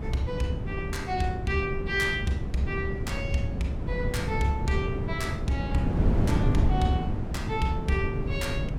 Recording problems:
wind on the microphone; below 200 Hz, SNR 0 dB

